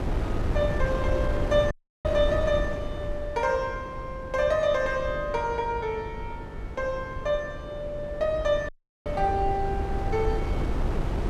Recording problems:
hum; 50 Hz, harmonics up to 600 Hz, SNR 17 dB
wind noise; below 230 Hz, SNR 5 dB
dropout; at 1.5 s and at 8.5 s

